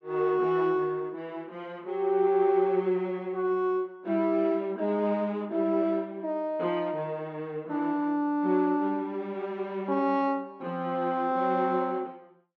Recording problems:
none

